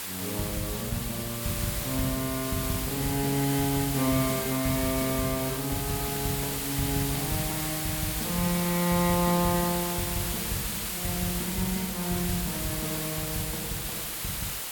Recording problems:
hiss; slope 0 dB per octave, SNR 1 dB

